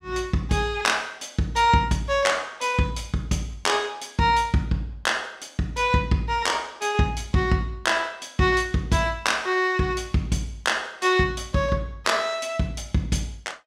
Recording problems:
none

